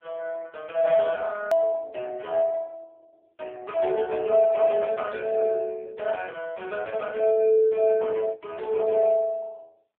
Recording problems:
telephone audio; 300 Hz to 3 kHz, AMR-NB
click at an edit; at 1.5 s

